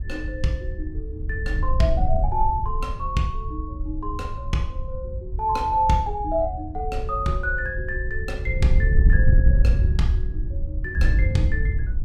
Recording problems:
wind on the microphone; below 72 Hz, SNR -1 dB

